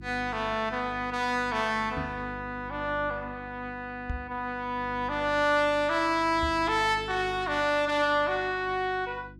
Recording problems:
hum; 50 Hz, harmonics up to 350 Hz, SNR 18 dB
knock on the microphone; at 2 s, at 4 s and at 6.5 s; peak -2 dB vs average level

